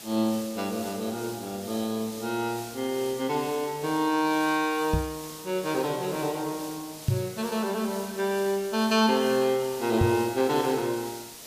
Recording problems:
hiss; SNR 13 dB
knock on the microphone; at 5 s, at 7 s and at 10 s; peak +6 dB vs average level

